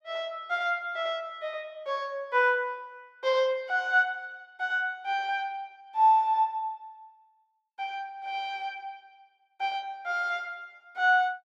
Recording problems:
none

